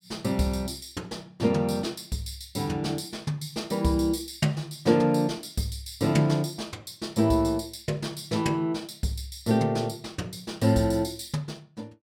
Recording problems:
none

